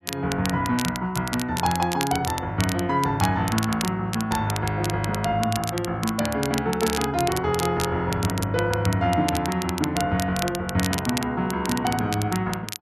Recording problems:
crackling; vinyl, SNR 9 dB

